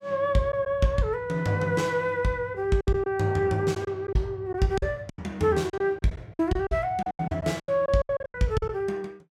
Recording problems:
lost packets; 11% of the sound replaced, filled with silence

